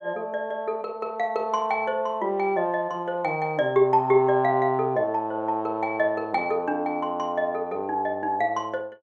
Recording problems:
none

